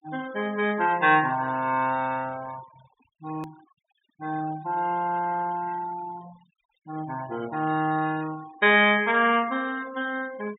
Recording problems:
treble cut off; nothing above 4 kHz
denoising artefacts; signal-to-artefact ratio 20 dB
hard cut with a click; at 3.5 s

